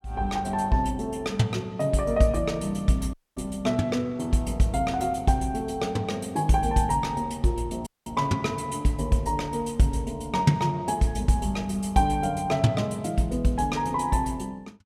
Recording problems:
audio cutting out; at 3 s and at 8 s

